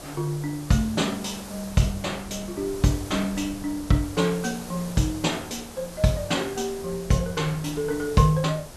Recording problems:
background hiss; SNR 15 dB
wind on the microphone; below 210 Hz, SNR 20 dB

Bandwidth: 12.5 kHz